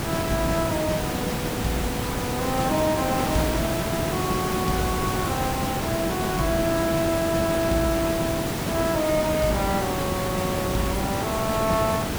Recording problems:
hiss; slope -5 dB per octave, SNR 1 dB

